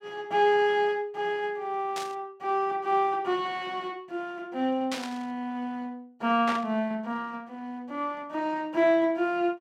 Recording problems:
static burst; at 2 s, at 5 s and at 6.5 s; peak -2 dB vs average level

